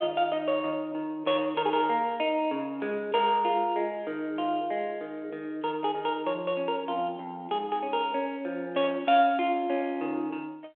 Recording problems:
phone line; 320 Hz to 3.9 kHz, G.726

